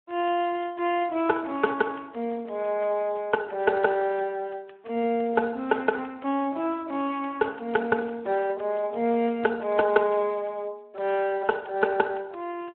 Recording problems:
phone line; 190 Hz to 2.8 kHz, Speex

